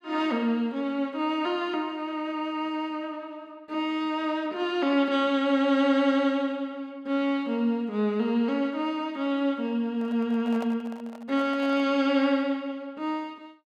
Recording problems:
handling noise; from 10 to 12 s; peak -8 dB vs average level

